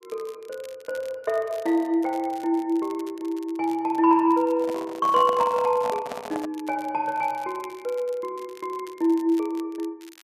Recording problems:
crackling; vinyl, SNR 25 dB
handling noise; from 4.5 to 6.5 s; peak -4 dB vs average level

